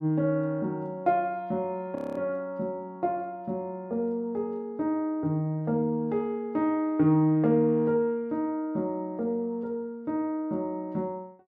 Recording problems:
frozen audio; at 2 s

